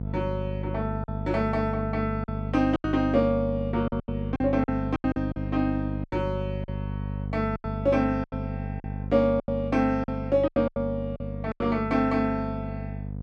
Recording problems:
hum; 50 Hz, harmonics up to 550 Hz, SNR 6 dB
packet loss; 10% of the sound replaced, filled with silence

